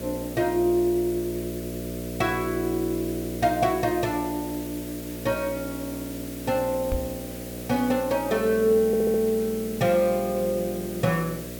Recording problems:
hum; 60 Hz, harmonics up to 660 Hz, SNR 10 dB
hiss; slope +1 dB per octave, SNR 14 dB
knock on the microphone; at 7 s; peak 0 dB vs average level
stutter; at 9 s

